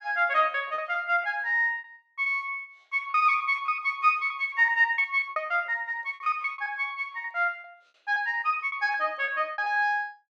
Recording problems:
lost packets; 15% of the sound replaced, filled with repeated pitch periods

